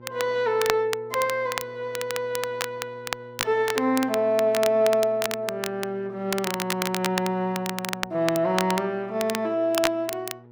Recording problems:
hum; 60 Hz, harmonics up to 1.3 kHz, SNR 22 dB
crackling; vinyl, SNR 7 dB

